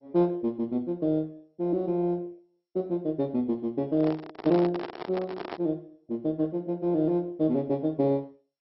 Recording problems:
codec artefacts; MP2, log-spectral distance 2 dB, nothing above 5.3 kHz
handling noise; from 4 to 5.5 s; peak -3 dB vs average level

